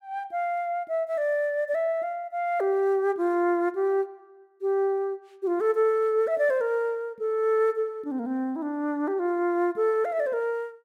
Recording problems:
none

